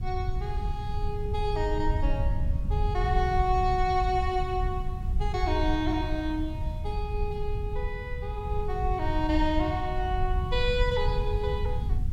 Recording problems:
hiss; SNR 27 dB
low-frequency rumble; below 84 Hz, SNR 1 dB

